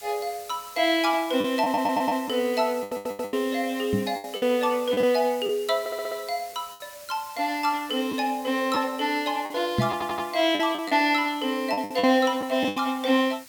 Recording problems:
hiss; slope +2 dB per octave, SNR 19 dB
lost packets; 7% of the sound replaced, filled with the last packet
stutter; 4 times, first at 1.5 s
microphone thump; at 4 s and at 10 s; peak +4 dB vs average level

